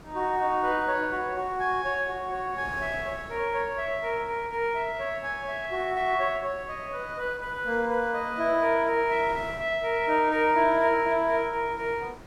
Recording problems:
wind noise; below 1 kHz, SNR 20 dB

